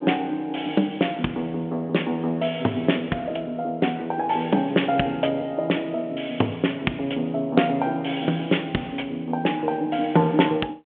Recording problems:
phone line; 170 Hz to 3.5 kHz, G.726

